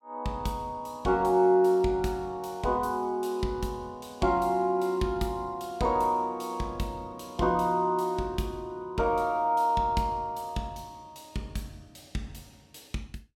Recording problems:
none

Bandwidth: 17 kHz